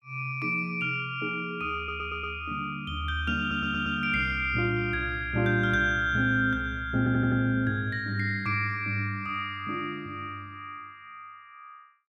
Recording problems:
stutter; at 2 s, at 3.5 s and at 7 s

